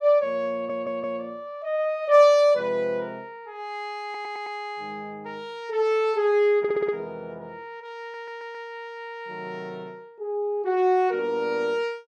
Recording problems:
stutter; 4 times, first at 0.5 s

